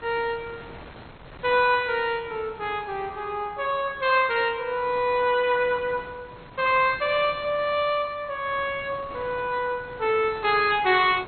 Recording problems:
codec artefacts; MP2, log-spectral distance 3 dB, nothing above 3.8 kHz
wind noise; below 1.5 kHz, SNR 21 dB

